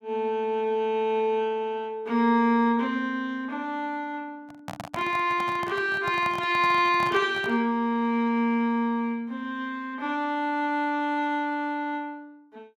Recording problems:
microphone handling noise; from 4.5 to 7.5 s; peak -5 dB vs average level

